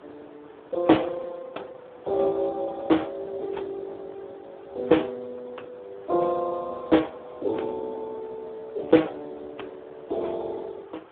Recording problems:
telephone audio; 320 Hz to 3.7 kHz, Speex
wind on the microphone; below 1.1 kHz, SNR 21 dB

